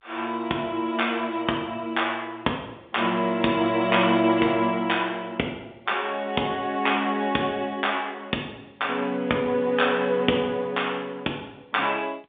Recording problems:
telephone audio; 220 Hz to 3.7 kHz, G.711

